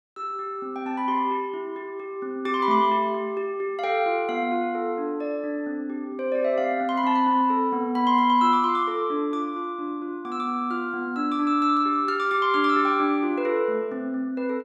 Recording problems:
none

